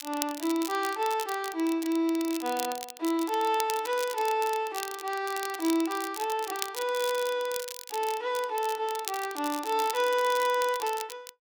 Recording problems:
crackling; vinyl, SNR 10 dB

